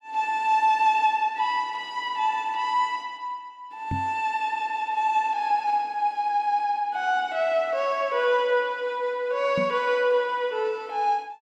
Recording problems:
microphone bump; at 4 s and at 9.5 s; peak -2 dB vs average level

